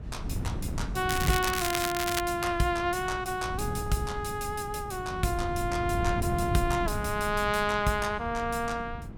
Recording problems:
wind noise; below 180 Hz, SNR 7 dB
crackling; from 1 to 2 s; loose cable, SNR 3 dB

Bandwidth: 17 kHz